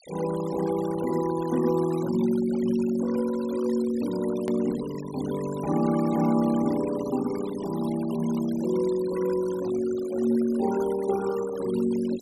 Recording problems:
noise reduction artefacts; signal-to-artefact ratio 17 dB
hard cut with a click; at 4.5 s

